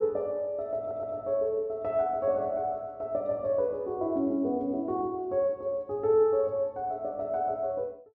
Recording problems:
audio stuttering; at 1 s

